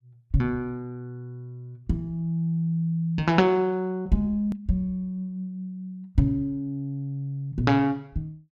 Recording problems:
edit click; at 4.5 s

